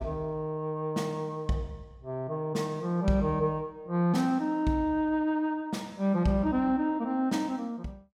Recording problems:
none

